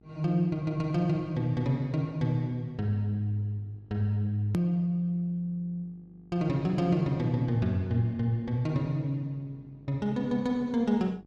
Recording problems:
hum; 50 Hz, harmonics up to 850 Hz, SNR 28 dB
edit click; at 4.5 s

